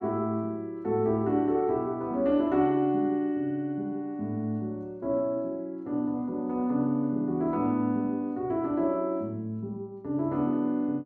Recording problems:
none

